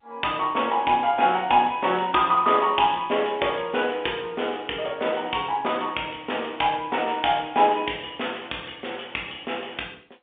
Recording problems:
telephone audio; 300 Hz to 3.6 kHz, G.711

